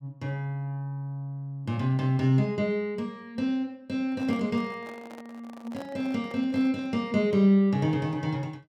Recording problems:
handling noise; from 4 to 7 s; peak -11 dB vs average level

